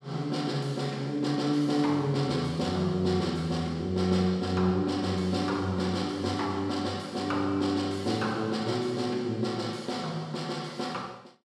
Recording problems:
none

